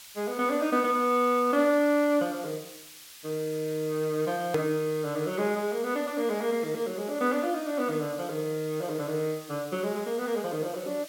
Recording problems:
hiss; slope +4 dB per octave, SNR 17 dB
hard cut with a click; at 4.5 s

